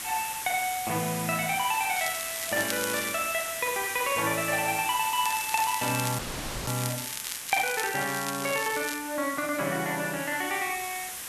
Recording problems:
background hiss; SNR 5 dB
crackling; from 2 to 3 s and from 5 to 9 s; loose cable, SNR 8 dB
audio cutting out; at 6 s

